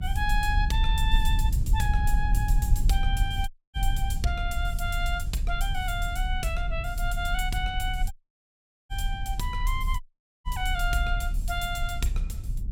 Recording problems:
rumble; below 62 Hz, strongest tone 34 Hz, SNR -2 dB
dropout; at 3.5 s, at 8 s for 1 s and at 10 s

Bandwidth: 16.5 kHz